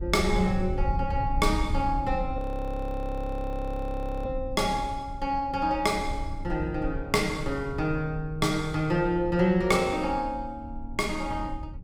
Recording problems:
low-frequency rumble; below 78 Hz, SNR 8 dB
audio freezing; at 2.5 s for 2 s

